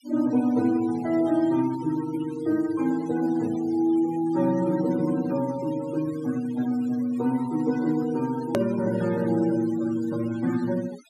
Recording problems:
denoising artefacts; signal-to-artefact ratio 18 dB
click at an edit; at 8.5 s

